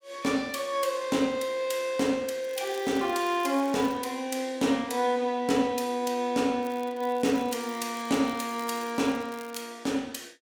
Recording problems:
crackling; from 2.5 to 4 s and from 6.5 to 9.5 s; loose cable, SNR 21 dB

